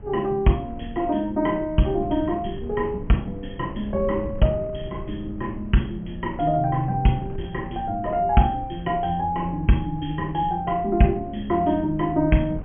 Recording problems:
treble cut off; nothing above 3.2 kHz
wind noise; below 140 Hz, SNR 15 dB

